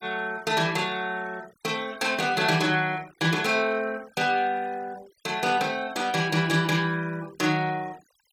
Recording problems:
noise reduction artefacts; signal-to-artefact ratio 23 dB

